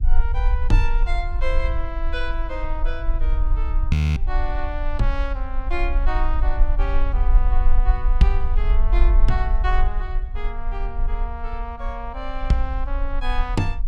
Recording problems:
low-frequency rumble; below 44 Hz, strongest tone 18 Hz, SNR -4 dB
audio freezing; at 4 s

